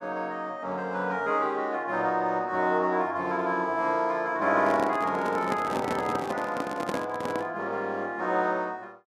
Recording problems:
handling noise; from 4.5 to 7.5 s; peak 0 dB vs average level

